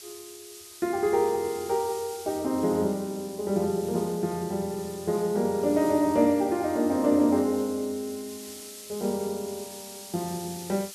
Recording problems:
hiss; slope +4 dB per octave, SNR 16 dB

